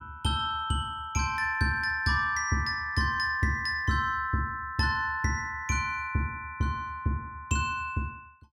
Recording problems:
none

